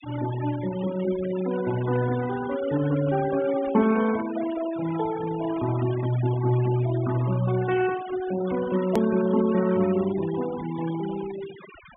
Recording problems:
treble cut off; nothing above 3.5 kHz
denoising artefacts; signal-to-artefact ratio 15 dB
hard cut with a click; at 9 s

